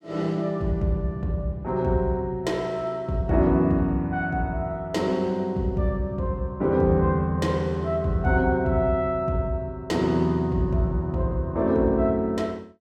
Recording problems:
none

